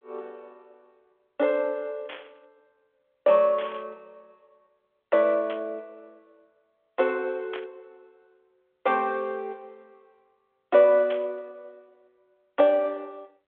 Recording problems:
telephone audio; 260 Hz to 3.5 kHz, G.726
burst of static; 5 times, first at 2 s; peak -10 dB vs average level

